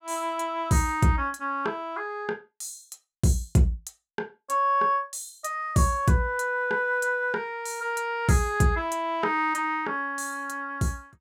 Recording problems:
none

